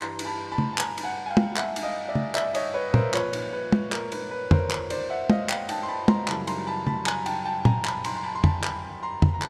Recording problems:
none

